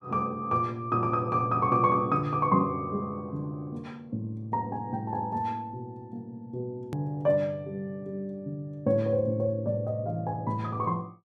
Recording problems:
hard cut with a click; at 7 s

